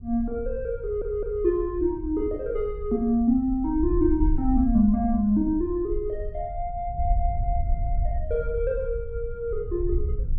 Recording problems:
low-pass filter; nothing above 6.6 kHz
wind noise; below 64 Hz, SNR 7 dB
stutter; at 1 s

